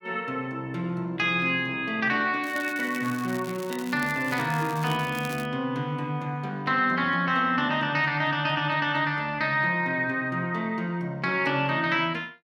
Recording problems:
crackling; from 2.5 to 5.5 s; loose cable, SNR 17 dB

